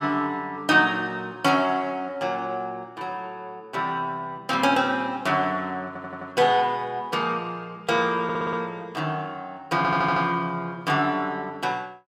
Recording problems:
stutter; at 6 s, at 8 s and at 10 s

